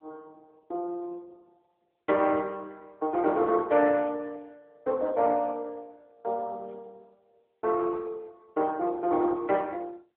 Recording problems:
phone line; 320 Hz to 2.4 kHz, AMR-NB

